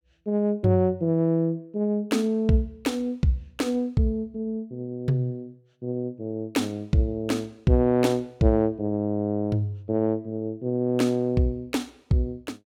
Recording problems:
none

